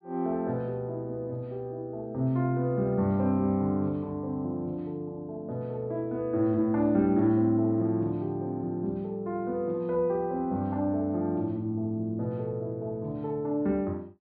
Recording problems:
treble missing; nothing above 4.7 kHz

